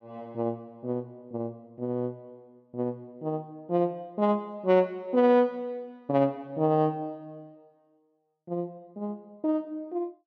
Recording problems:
none

